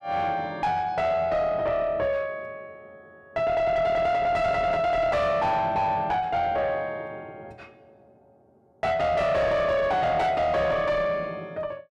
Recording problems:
distortion; soft clipping, signal-to-distortion ratio 7 dB

